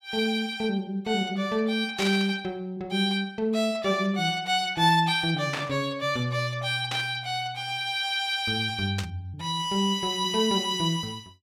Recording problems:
static burst; 4 times, first at 2 s; peak -1 dB vs average level

